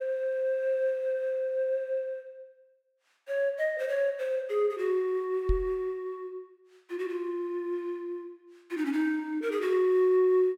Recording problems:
microphone bump; at 5.5 s; peak +3 dB vs average level

